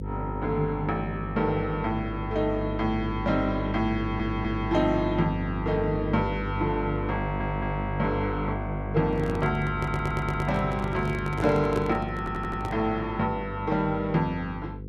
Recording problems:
hum; 50 Hz, harmonics up to 500 Hz, SNR 6 dB
stutter; 4 times, first at 4 s
microphone handling noise; from 9 to 13 s; peak 0 dB vs average level

